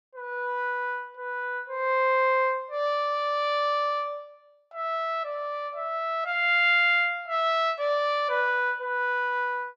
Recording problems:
none

